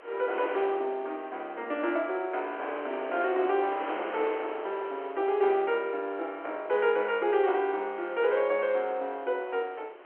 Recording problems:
telephone audio; 300 Hz to 3.3 kHz, G.711
wind noise; below 1.3 kHz, SNR 13 dB

